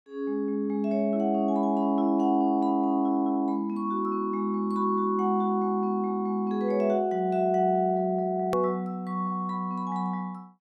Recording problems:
click at an edit; at 8.5 s

